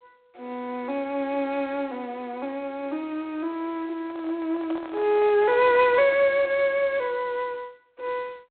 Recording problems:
phone line; 260 Hz to 3.9 kHz, G.726
microphone handling noise; from 4 to 6.5 s; peak -10 dB vs average level

